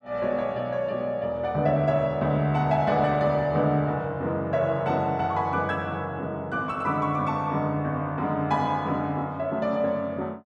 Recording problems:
none

